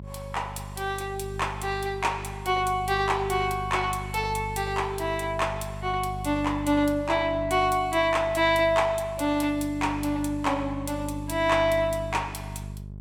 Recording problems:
mains hum; 50 Hz, harmonics up to 450 Hz, SNR 11 dB

